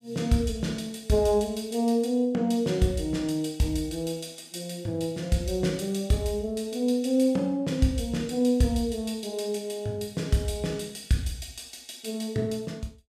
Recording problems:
none

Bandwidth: 14.5 kHz